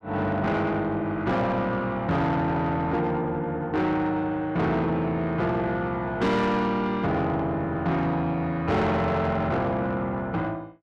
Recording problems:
distortion; soft clipping, signal-to-distortion ratio 10 dB

